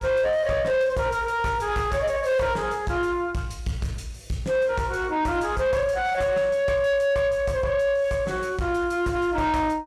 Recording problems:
distorted audio; soft clipping, signal-to-distortion ratio 10 dB

